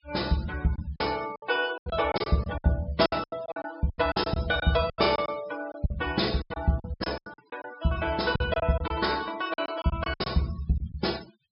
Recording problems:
low-pass filter; nothing above 5.3 kHz
denoising artefacts; signal-to-artefact ratio 17 dB
packet loss; 15% of the sound replaced, filled with silence

